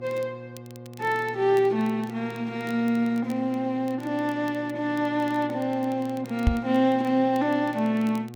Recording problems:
hum; 60 Hz, harmonics up to 1.2 kHz, SNR 16 dB
crackling; vinyl, SNR 27 dB
microphone thump; at 6.5 s; peak +7 dB vs average level

